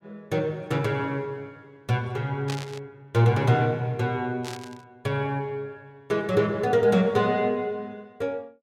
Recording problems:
burst of static; at 2.5 s and at 4.5 s; peak -6 dB vs average level

